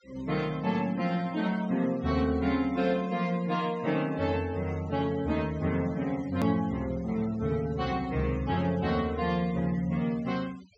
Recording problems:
treble missing; nothing above 8 kHz
noise reduction artefacts; signal-to-artefact ratio 21 dB
click at an edit; at 6.5 s

